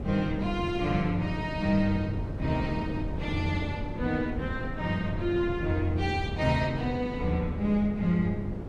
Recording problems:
wind noise; below 250 Hz, SNR 7 dB

